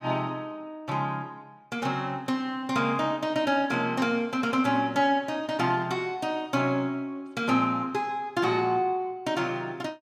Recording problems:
none

